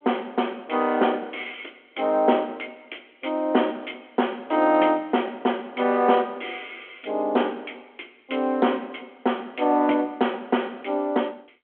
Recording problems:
telephone audio; 220 Hz to 3.3 kHz, G.726

